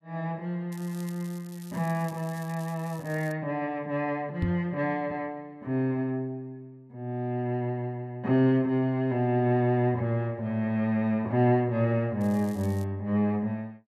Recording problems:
crackling; from 0.5 to 3.5 s and at 12 s; loose cable, SNR 23 dB
microphone bump; at 4.5 s; peak +2 dB vs average level

